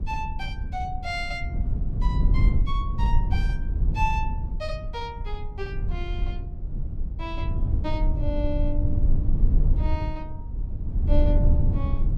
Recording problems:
low-frequency rumble; below 78 Hz, SNR -7 dB

